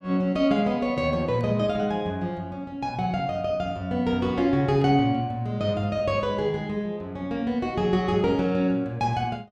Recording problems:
none

